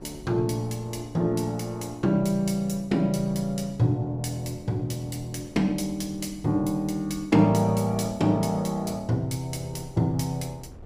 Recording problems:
wind noise; below 250 Hz, SNR 21 dB

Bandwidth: 15.5 kHz